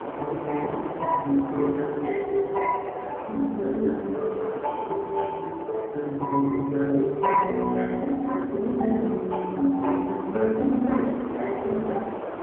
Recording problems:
phone line; 240 Hz to 2 kHz, AMR-NB
wind noise; below 920 Hz, SNR 10 dB

